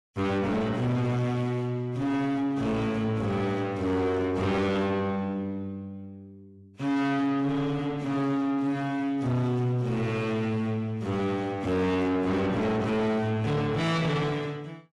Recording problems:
lossy compression; AAC, log-spectral distance 2 dB
distortion; soft clipping, signal-to-distortion ratio 8 dB

